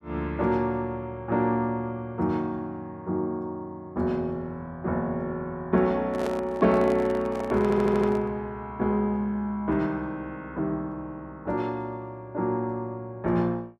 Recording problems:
microphone handling noise; from 6 to 8.5 s; peak -2 dB vs average level
audio stuttering; at 7.5 s

